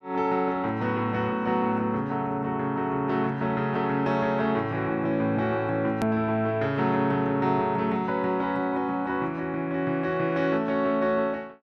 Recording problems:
edit click; at 6 s

